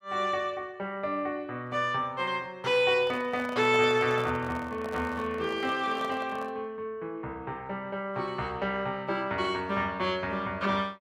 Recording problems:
handling noise; from 3 to 6.5 s; peak -6 dB vs average level

